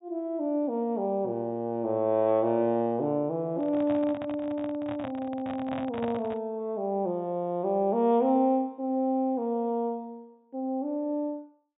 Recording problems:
treble missing; nothing above 4 kHz
handling noise; from 3.5 to 6.5 s; peak -4 dB vs average level

